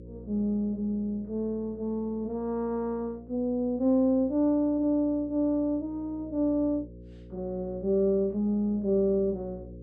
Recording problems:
hum; 60 Hz, harmonics up to 540 Hz, SNR 19 dB

